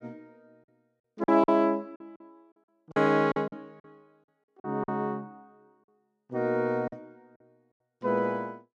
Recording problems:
packet loss; 9% of the sound replaced, filled with silence

